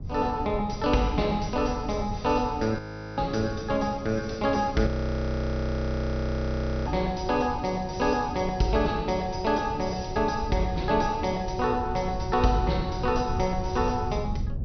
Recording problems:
low-pass filter; nothing above 6.1 kHz
wind on the microphone; below 130 Hz, SNR 10 dB
audio freezing; at 3 s and at 5 s for 2 s

